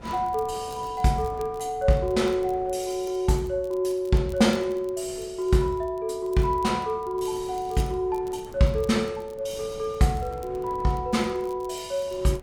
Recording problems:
wind on the microphone; below 570 Hz, SNR 22 dB
crackling; vinyl, SNR 28 dB

